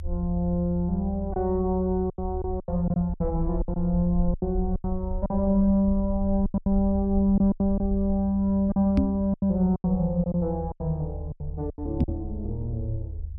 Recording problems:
rumble; below 78 Hz, SNR 8 dB
packet loss; 11% of the sound replaced, filled with silence
microphone thump; at 9 s and at 12 s; peak +6 dB vs average level

